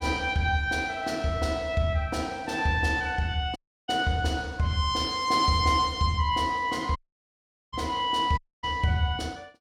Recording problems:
dropout; at 3.5 s, at 7 s for 1 s and at 8.5 s

